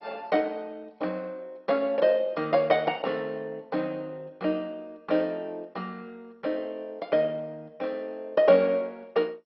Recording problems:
lossy compression; MP2, log-spectral distance 2 dB, nothing above 4.5 kHz

